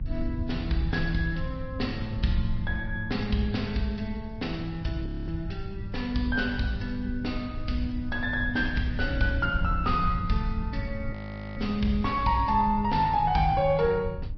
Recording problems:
treble missing; nothing above 5.2 kHz
lossy compression; MP3, log-spectral distance 2 dB
hum; 50 Hz, harmonics up to 600 Hz, SNR 17 dB
low-frequency rumble; below 96 Hz, SNR 8 dB
frozen audio; at 5 s and at 11 s

